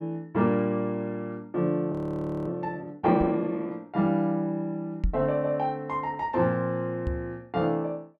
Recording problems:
frozen audio; at 2 s for 0.5 s
microphone thump; at 3 s, at 5 s and at 7 s; peak +4 dB vs average level

